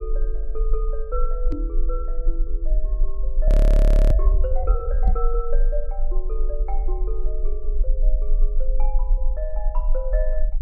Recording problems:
low-frequency rumble; below 38 Hz, strongest tone 20 Hz, SNR -9 dB
microphone bump; at 1.5 s and at 5 s; peak +8 dB vs average level
audio freezing; at 3.5 s for 0.5 s

